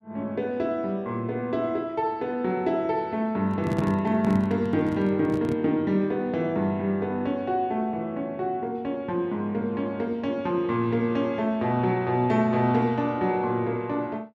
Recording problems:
handling noise; from 3.5 to 5.5 s; peak +1 dB vs average level

